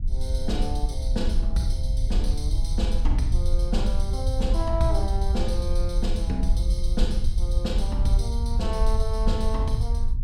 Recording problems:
rumble; below 60 Hz, SNR -4 dB

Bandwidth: 16 kHz